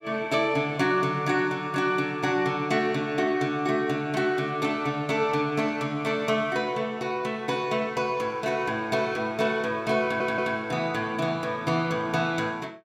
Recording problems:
stutter; at 10 s

